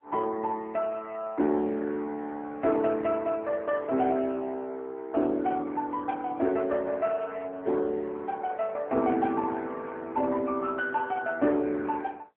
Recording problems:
phone line; 220 Hz to 3.3 kHz, AMR-NB

